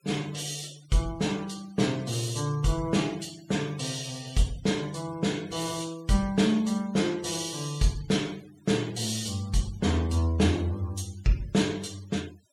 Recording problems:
noise reduction artefacts; signal-to-artefact ratio 21 dB

